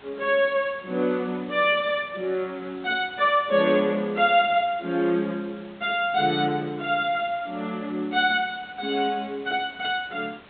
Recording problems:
low-pass filter; nothing above 4 kHz
hiss; SNR 24 dB

